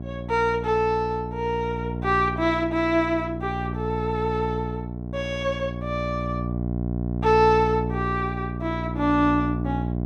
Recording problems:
mains hum; 60 Hz, harmonics up to 780 Hz, SNR 5 dB

